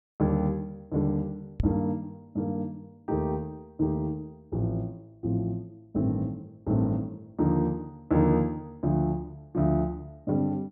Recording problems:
microphone thump; at 1.5 s; peak +5 dB vs average level

